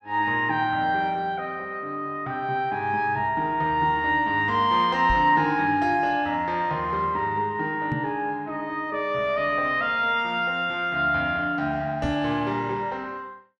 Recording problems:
microphone thump; at 5 s, at 8 s and at 12 s; peak -2 dB vs average level

